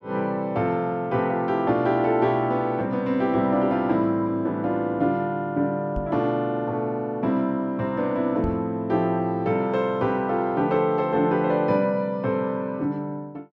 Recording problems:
microphone thump; at 6 s and at 8.5 s; peak -2 dB vs average level

